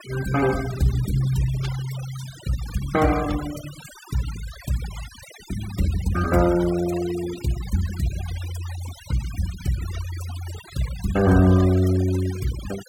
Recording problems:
noise reduction artefacts; signal-to-artefact ratio 14 dB

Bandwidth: 17.5 kHz